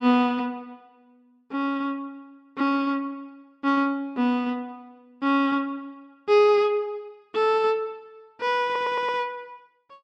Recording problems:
stutter; at 8.5 s

